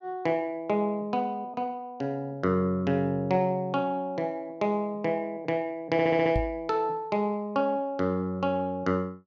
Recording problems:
stutter; at 6 s
microphone thump; at 6.5 s; peak +2 dB vs average level

